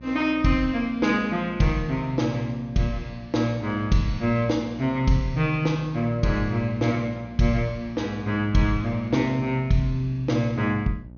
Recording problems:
treble cut off; nothing above 6.5 kHz
hum; 60 Hz, harmonics up to 660 Hz, SNR 19 dB

